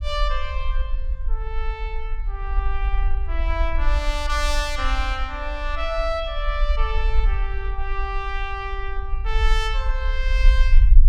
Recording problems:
low-frequency rumble; below 46 Hz, strongest tone 24 Hz, SNR -2 dB

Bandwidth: 17 kHz